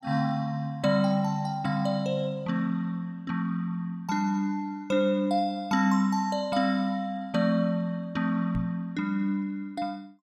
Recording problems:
microphone thump; at 8.5 s; peak -2 dB vs average level

